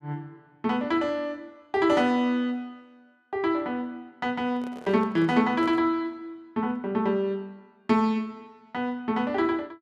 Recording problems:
microphone handling noise; from 4.5 to 6 s; peak -10 dB vs average level

